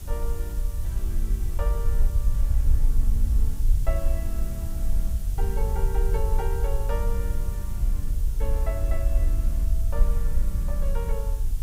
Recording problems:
background hiss; SNR 8 dB
rumble; below 54 Hz, SNR -11 dB
wind on the microphone; below 290 Hz, SNR 17 dB

